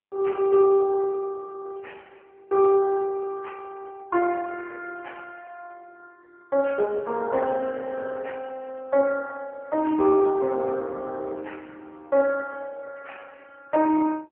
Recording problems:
phone line; 280 Hz to 3.5 kHz, AMR-NB

